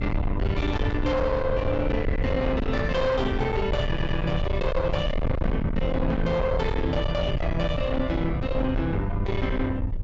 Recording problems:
treble cut off; nothing above 8 kHz
distorted audio; soft clipping, signal-to-distortion ratio 7 dB
rumble; below 150 Hz, SNR 4 dB
wind noise; below 180 Hz, SNR 9 dB
audio stuttering; at 4 s

